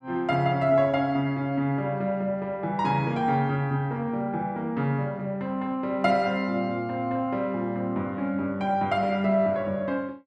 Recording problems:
none

